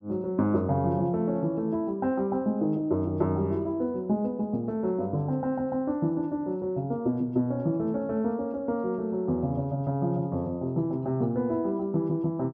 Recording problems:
none

